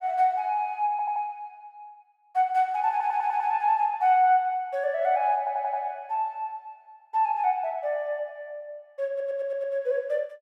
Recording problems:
audio stuttering; 4 times, first at 1 s

